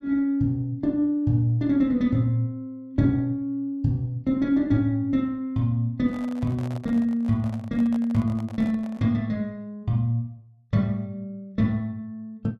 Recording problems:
microphone handling noise; from 6 to 9 s; peak -12 dB vs average level

